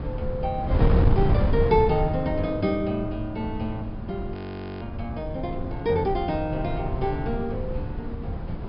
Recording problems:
low-pass filter; nothing above 5.5 kHz
wind noise; below 170 Hz, SNR 2 dB
frozen audio; at 4.5 s

